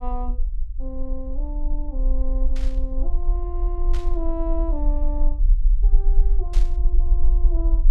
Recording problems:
rumble; below 40 Hz, SNR -11 dB
static burst; at 2.5 s, at 4 s and at 6.5 s; peak -2 dB vs average level

